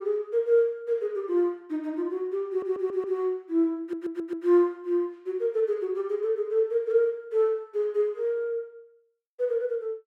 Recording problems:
stutter; at 2.5 s and at 4 s

